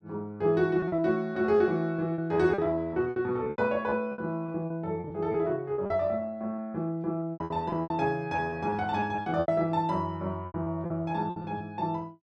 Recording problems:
lost packets; 13% of the sound replaced, filled with repeated pitch periods

